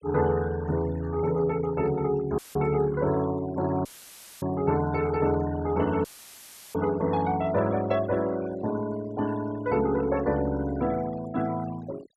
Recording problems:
denoising artefacts; signal-to-artefact ratio 17 dB
dropout; at 2.5 s, at 4 s for 0.5 s and at 6 s for 0.5 s; filled with static

